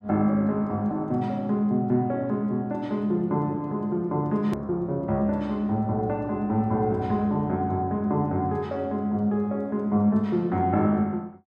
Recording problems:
edit click; at 4.5 s

